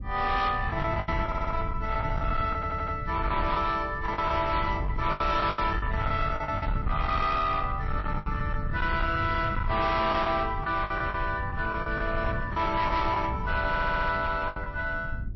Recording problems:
codec artefacts; MP3, log-spectral distance 2 dB, nothing above 5.7 kHz
distorted audio; soft clipping, signal-to-distortion ratio 10 dB
rumble; below 130 Hz, SNR 6 dB
packet loss; 9% of the sound replaced, filled with the last packet
audio stuttering; at 1.5 s, at 2.5 s and at 14 s
static burst; at 6.5 s; peak -13 dB vs average level

